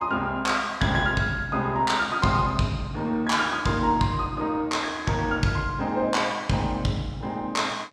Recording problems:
none

